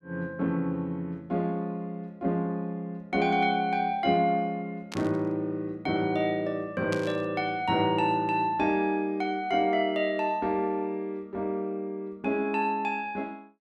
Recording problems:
burst of static; at 5 s and at 7 s; peak -5 dB vs average level

